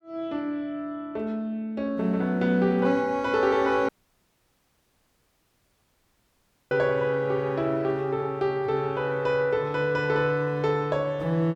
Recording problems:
dropout; at 4 s for 3 s

